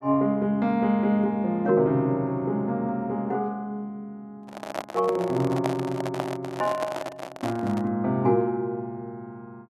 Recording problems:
microphone handling noise; from 4.5 to 8 s; peak +2 dB vs average level

